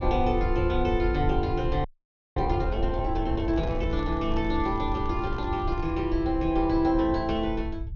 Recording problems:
treble missing; nothing above 6.6 kHz
low-frequency rumble; below 84 Hz, SNR 5 dB
frozen audio; at 2 s for 0.5 s
microphone handling noise; from 3.5 to 6 s; peak -9 dB vs average level

